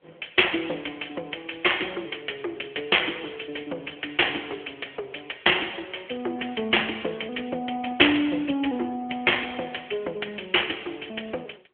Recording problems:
phone line; 280 Hz to 3.3 kHz, AMR-NB

